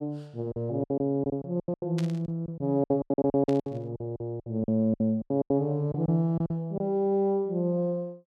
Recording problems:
packet loss; 15% of the sound replaced, filled with silence
static burst; at 2 s and at 3.5 s; peak -8 dB vs average level

